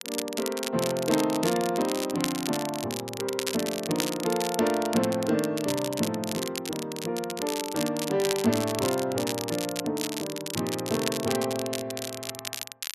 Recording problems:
crackling; vinyl, SNR 6 dB

